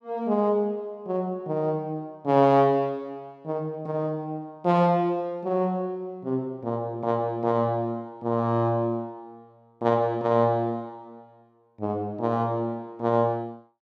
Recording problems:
none

